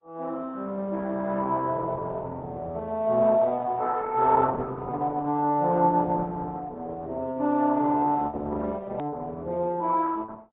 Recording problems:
treble missing; nothing above 3.8 kHz
lossy codec; Opus, log-spectral distance 3 dB
click at an edit; at 9 s

